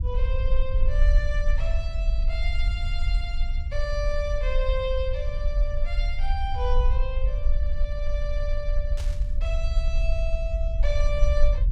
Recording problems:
low-frequency rumble; below 50 Hz, strongest tone 20 Hz, SNR -6 dB
static burst; at 9 s; peak -4 dB vs average level

